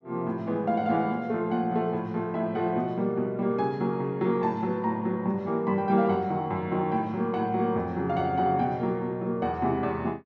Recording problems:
none

